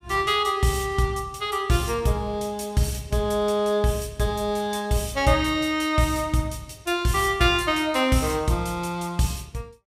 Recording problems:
none

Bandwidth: 15.5 kHz